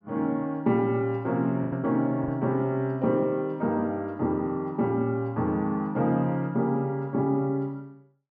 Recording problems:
lost packets; 1.5% of the sound replaced, filled with the last packet

